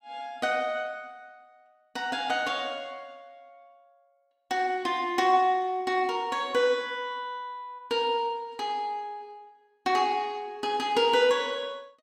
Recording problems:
none

